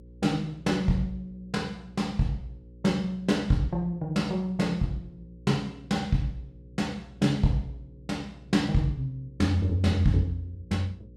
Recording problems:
electrical hum; 60 Hz, harmonics up to 540 Hz, SNR 21 dB

